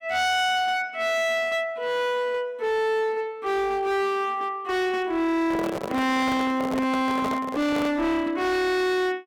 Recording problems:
distortion; hard clipping, signal-to-distortion ratio 8 dB
handling noise; from 5.5 to 8 s; peak -1 dB vs average level

